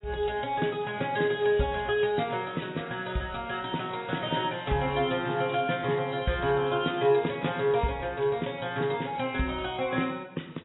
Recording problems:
lossy codec; AAC, log-spectral distance 5 dB, nothing above 3.8 kHz

